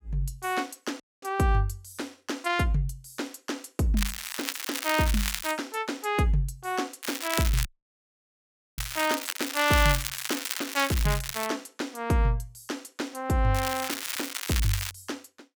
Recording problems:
dropout; at 1 s and at 7.5 s for 1 s
crackling; from 4 to 5.5 s, from 7 to 11 s and from 14 to 15 s; loose cable, SNR 3 dB

